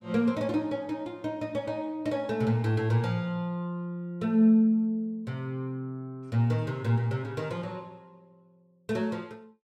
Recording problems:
none

